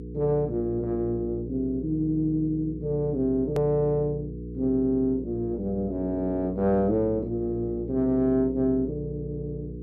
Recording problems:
hum; 60 Hz, harmonics up to 480 Hz, SNR 10 dB
edit click; at 3.5 s

